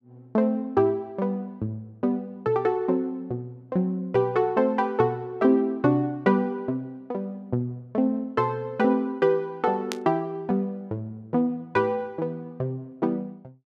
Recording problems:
burst of static; at 10 s; peak -1 dB vs average level

